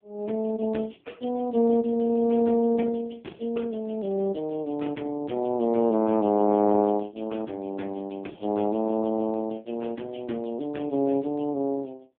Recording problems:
telephone audio; 130 Hz to 3.4 kHz, AMR-NB

